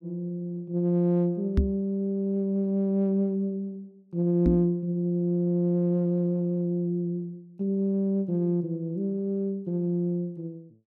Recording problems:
microphone thump; at 1.5 s and at 4.5 s; peak +7 dB vs average level

